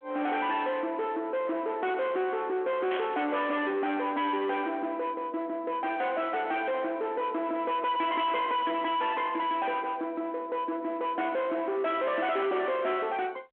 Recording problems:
phone line; 220 Hz to 3.9 kHz, G.726
distorted audio; soft clipping, signal-to-distortion ratio 7 dB
static burst; at 3 s; peak -4 dB vs average level

